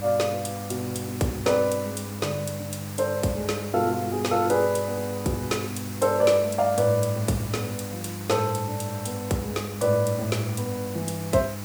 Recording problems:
hum; 50 Hz, harmonics up to 1.3 kHz, SNR 10 dB
background hiss; SNR 13 dB

